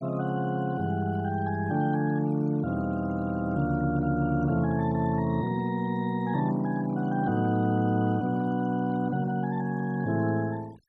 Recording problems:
noise reduction artefacts; signal-to-artefact ratio 23 dB

